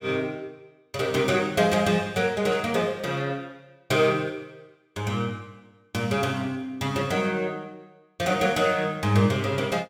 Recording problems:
static burst; at 2.5 s; peak -13 dB vs average level

